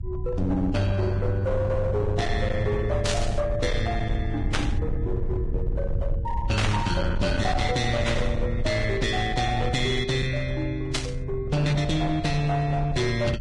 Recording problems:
codec artefacts; Vorbis, log-spectral distance 2 dB, nothing above 10.4 kHz
distortion; hard clipping, uneven, signal-to-distortion ratio 10 dB
rumble; below 100 Hz, SNR 5 dB
static burst; 5 times, first at 3 s; peak +4 dB vs average level

